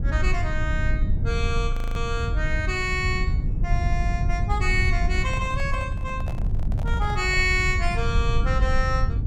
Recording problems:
rumble; below 92 Hz, SNR -1 dB
audio freezing; at 1.5 s
handling noise; from 5 to 7.5 s; peak -7 dB vs average level

